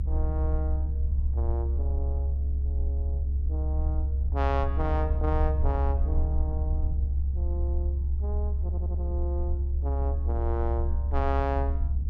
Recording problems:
rumble; below 70 Hz, strongest tone 68 Hz, SNR -7 dB
audio stuttering; at 8.5 s

